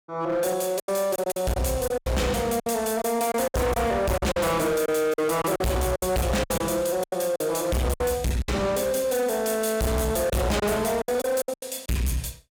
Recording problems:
distorted audio; hard clipping, signal-to-distortion ratio 6 dB
lost packets; 11% of the sound replaced, filled with silence

